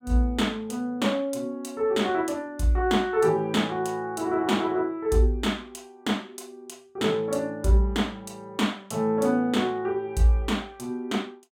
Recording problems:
none

